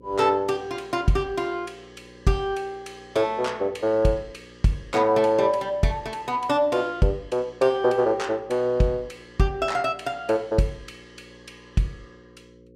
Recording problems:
hum; 60 Hz, harmonics up to 540 Hz, SNR 25 dB

